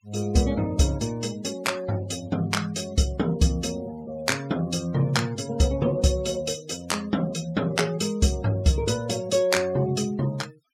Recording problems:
denoising artefacts; signal-to-artefact ratio 21 dB

